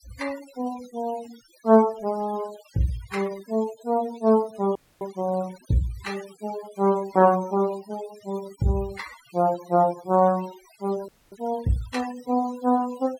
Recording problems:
denoising artefacts; signal-to-artefact ratio 19 dB
frozen audio; at 5 s and at 11 s

